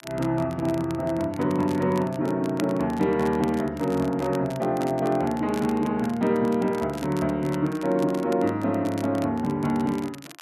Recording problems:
crackle; vinyl, SNR 20 dB

